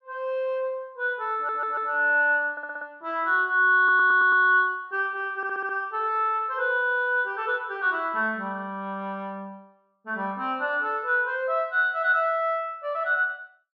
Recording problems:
stutter; 4 times, first at 1.5 s

